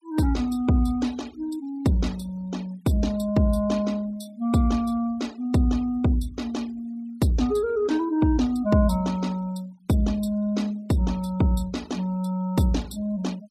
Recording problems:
denoising artefacts; signal-to-artefact ratio 24 dB

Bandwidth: 14.5 kHz